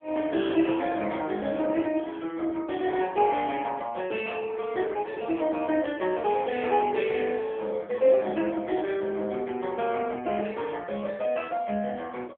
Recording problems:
telephone audio; 260 Hz to 3.5 kHz, AMR-NB

